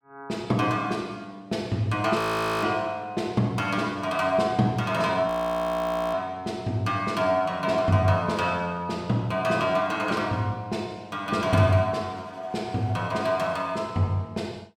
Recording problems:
audio freezing; at 2 s and at 5.5 s for 1 s

